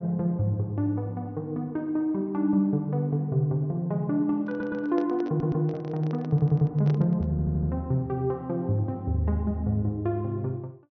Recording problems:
low-pass filter; nothing above 6.1 kHz
handling noise; from 4.5 to 7.5 s; peak -6 dB vs average level
stutter; 4 times, first at 4.5 s

